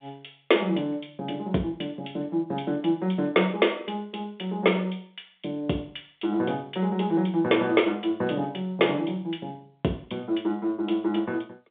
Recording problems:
phone line; 150 Hz to 3.6 kHz, G.711

